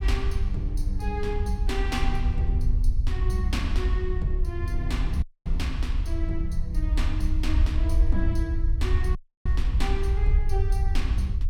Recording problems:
low-frequency rumble; below 66 Hz, SNR -6 dB
audio cutting out; at 5 s and at 9 s

